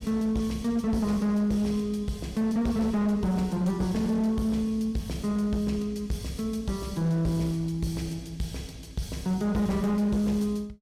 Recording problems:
distorted audio; hard clipping, uneven, signal-to-distortion ratio 11 dB

